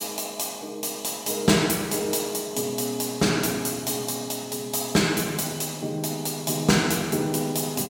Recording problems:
none

